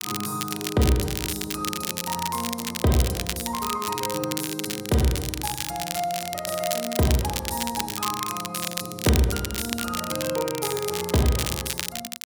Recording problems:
crackle; vinyl, SNR 3 dB

